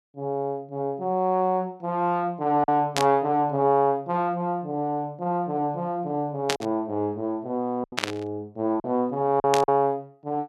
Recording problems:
lost packets; 3% of the sound replaced, filled with silence
static burst; 4 times, first at 3 s; peak +4 dB vs average level

